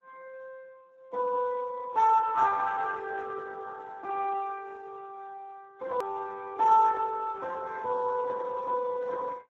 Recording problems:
lossy codec; MP3, then Speex, log-spectral distance 3 dB
hard cut with a click; at 6 s

